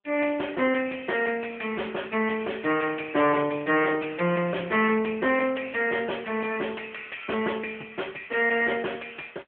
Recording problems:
phone line; 240 Hz to 3.1 kHz, AMR-NB
distortion; soft clipping, signal-to-distortion ratio 10 dB

